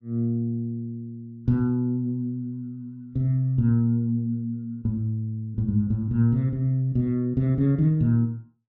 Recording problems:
none

